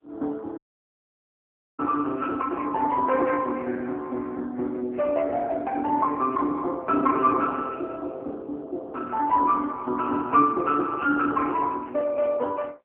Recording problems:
phone line; 240 Hz to 2.6 kHz, AMR-NB
dropout; at 0.5 s for 1 s

